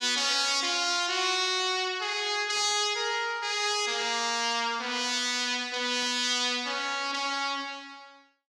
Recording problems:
static burst; at 2.5 s, at 4 s and at 6 s; peak -14 dB vs average level

